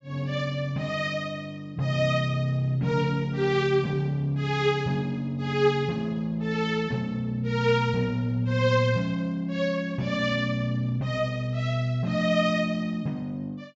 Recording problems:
treble cut off; nothing above 8 kHz

